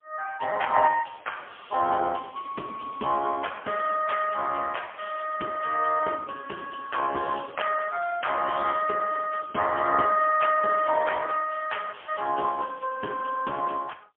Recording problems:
phone line; 300 Hz to 3.2 kHz, AMR-NB, then MP3

